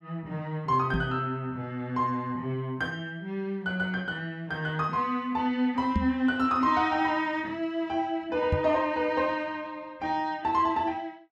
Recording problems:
microphone bump; at 1 s, at 6 s and at 8.5 s; peak +5 dB vs average level

